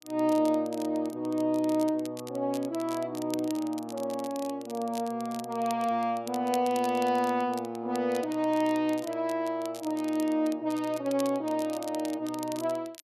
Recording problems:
crackling; vinyl, SNR 17 dB

